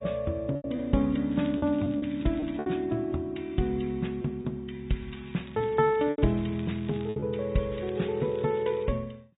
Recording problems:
treble cut off; nothing above 3.8 kHz
codec artefacts; MP3, log-spectral distance 4 dB
packet loss; 6% of the sound replaced, filled with repeated pitch periods
crackling; from 1.5 to 2.5 s, from 5 to 7 s and from 7.5 to 9 s; loose cable, SNR 24 dB

